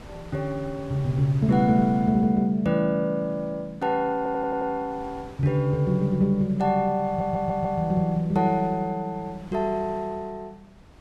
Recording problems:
wind on the microphone; below 670 Hz, SNR 22 dB
audio stuttering; at 4 s and at 7 s

